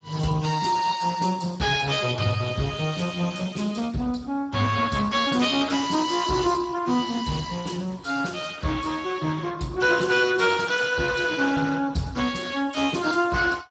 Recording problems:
codec artefacts; Speex, log-spectral distance 6 dB, nothing above 7.3 kHz

